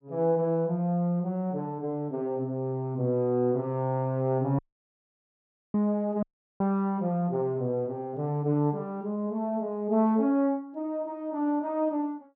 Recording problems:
dropout; at 4.5 s for 1 s and at 6 s

